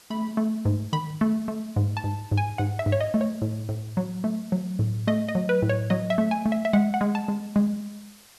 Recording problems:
background hiss; slope 0 dB per octave, SNR 24 dB

